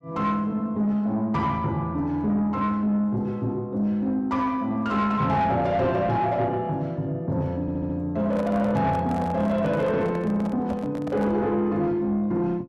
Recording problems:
distorted audio; soft clipping, signal-to-distortion ratio 12 dB
audio stuttering; at 7.5 s
handling noise; from 8 to 11 s; peak -3 dB vs average level

